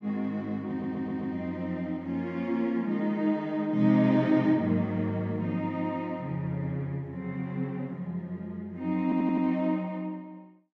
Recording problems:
audio stuttering; at 0.5 s and at 9 s

